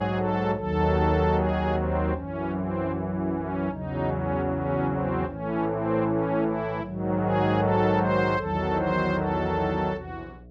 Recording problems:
electrical hum; 60 Hz, harmonics up to 720 Hz, SNR 22 dB

